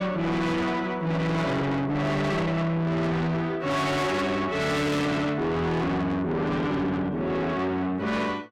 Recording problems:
distortion; soft clipping, signal-to-distortion ratio 6 dB

